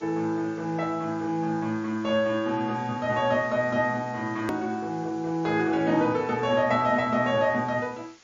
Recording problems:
codec artefacts; MP3, log-spectral distance 4 dB, nothing above 13.3 kHz
hiss; slope 0 dB per octave, SNR 27 dB
edit click; at 4.5 s

